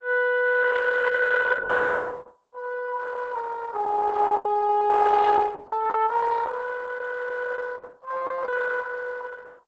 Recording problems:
codec artefacts; Opus, log-spectral distance 4 dB, nothing above 8 kHz
lost packets; 5% of the sound replaced, filled with the last packet

